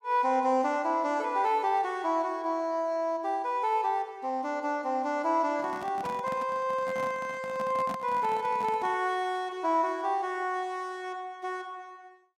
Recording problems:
microphone handling noise; from 5.5 to 9 s; peak -6 dB vs average level

